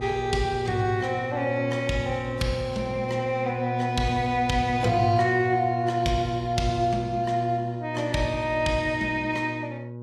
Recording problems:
lossy compression; AAC, log-spectral distance 2 dB
hum; 60 Hz, harmonics up to 960 Hz, SNR 7 dB

